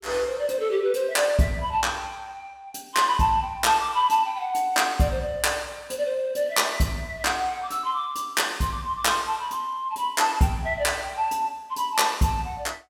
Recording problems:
none

